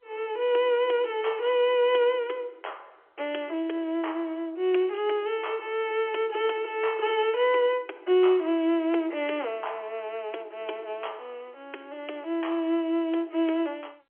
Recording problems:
telephone audio; 280 Hz to 3.3 kHz, G.711

